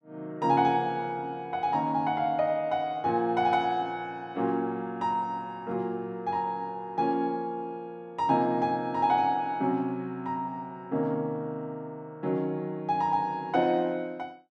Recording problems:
none

